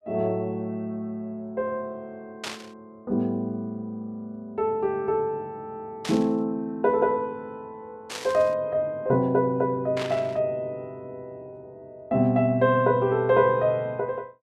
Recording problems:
burst of static; 4 times, first at 2.5 s; peak -3 dB vs average level

